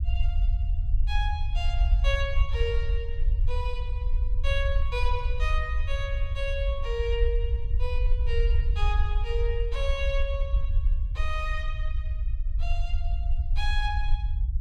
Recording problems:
low-frequency rumble; below 60 Hz, SNR -5 dB

